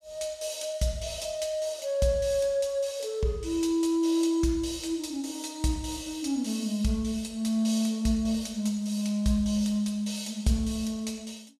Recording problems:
none

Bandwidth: 14.5 kHz